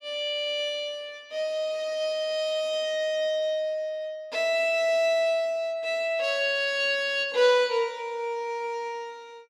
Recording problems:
none

